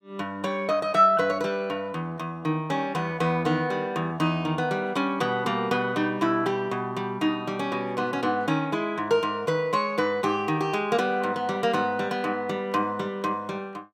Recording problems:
none

